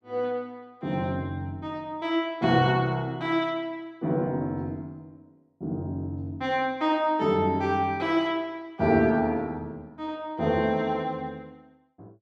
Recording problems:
none

